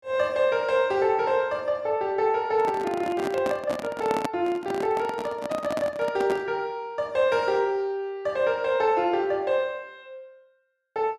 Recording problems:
handling noise; from 2.5 to 6.5 s; peak +1 dB vs average level

